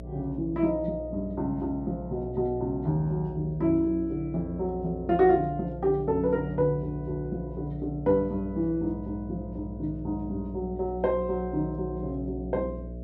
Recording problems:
hum; 60 Hz, harmonics up to 660 Hz, SNR 11 dB

